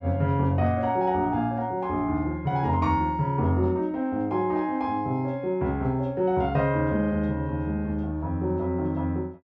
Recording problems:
none

